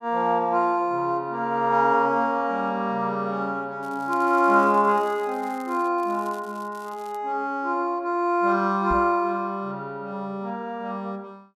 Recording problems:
crackling; from 4 to 6 s and from 6 to 7 s; loose cable, SNR 27 dB
microphone bump; at 9 s; peak -2 dB vs average level

